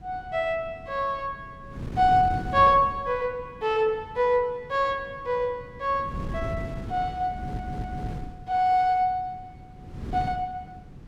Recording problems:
wind noise; below 230 Hz, SNR 13 dB
stutter; at 7.5 s

